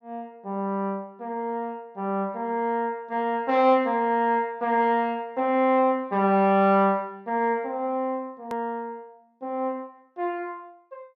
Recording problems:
hard cut with a click; at 8.5 s

